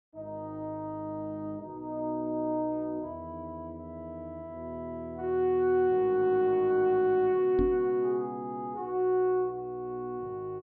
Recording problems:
low-pass filter; nothing above 5.1 kHz
knock on the microphone; at 7.5 s; peak +2 dB vs average level

